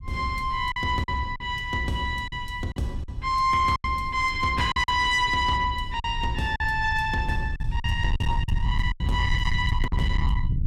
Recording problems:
distorted audio; soft clipping, signal-to-distortion ratio 11 dB
low-frequency rumble; below 100 Hz, SNR 6 dB
lost packets; 7% of the sound replaced, filled with silence

